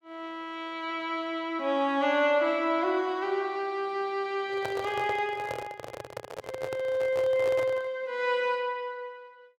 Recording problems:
handling noise; from 4.5 to 8 s; peak -3 dB vs average level

